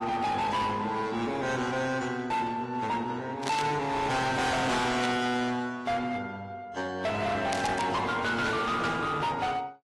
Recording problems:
codec artefacts; AAC, then AAC, log-spectral distance 3 dB, nothing above 11.3 kHz
distorted audio; hard clipping, signal-to-distortion ratio 8 dB
static burst; at 3.5 s, at 5 s and at 7.5 s; peak -1 dB vs average level

